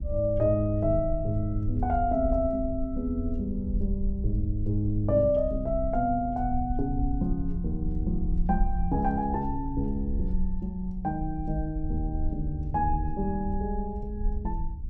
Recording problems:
low-frequency rumble; below 64 Hz, SNR 5 dB

